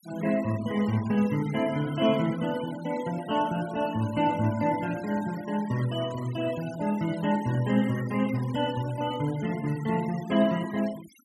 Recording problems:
denoising artefacts; signal-to-artefact ratio 17 dB

